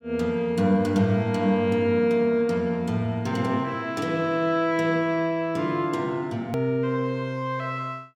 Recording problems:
edit click; at 6.5 s

